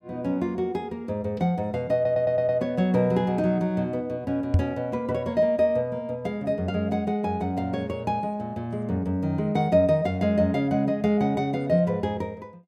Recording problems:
stutter; at 2 s
microphone bump; at 4.5 s; peak +8 dB vs average level

